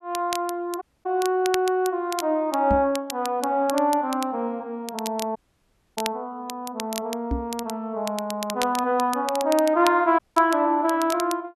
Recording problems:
crackle; vinyl, SNR 13 dB
dropout; at 1 s, at 5.5 s for 0.5 s and at 10 s
microphone thump; at 2.5 s and at 7.5 s; peak +1 dB vs average level

